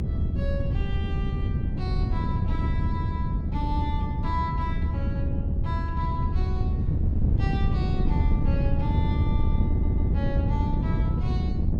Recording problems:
rumble; below 76 Hz, strongest tone 76 Hz, SNR -5 dB
wind on the microphone; below 160 Hz, SNR -9 dB
stutter; at 9.5 s

